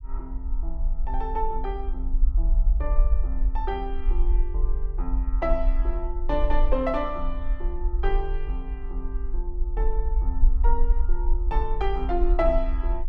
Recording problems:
rumble; below 44 Hz, SNR -3 dB

